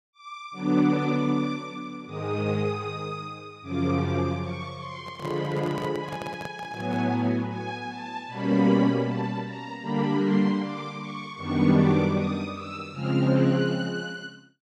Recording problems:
handling noise; from 5 to 7 s; peak -5 dB vs average level

